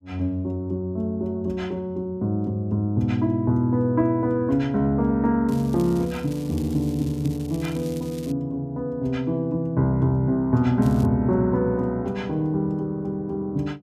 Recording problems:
crackle; from 5.5 to 8.5 s and at 11 s; loose cable, SNR 22 dB

